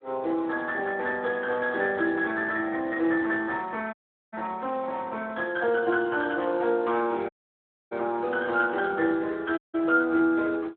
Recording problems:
phone line; 260 Hz to 3 kHz, Speex
dropout; at 4 s, at 7.5 s for 0.5 s and at 9.5 s

